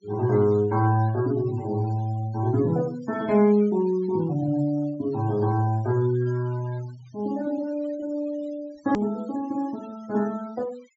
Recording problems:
treble missing; nothing above 8 kHz
noise reduction artefacts; signal-to-artefact ratio 22 dB
edit click; at 9 s

